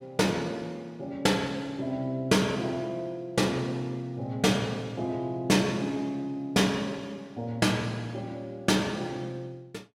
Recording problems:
none

